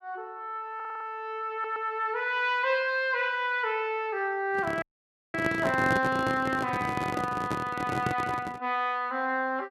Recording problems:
audio stuttering; at 1 s and at 1.5 s
microphone handling noise; from 4.5 to 8.5 s; peak +2 dB vs average level
audio cutting out; at 5 s for 0.5 s

